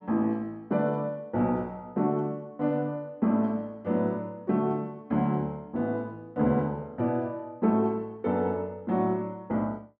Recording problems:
none

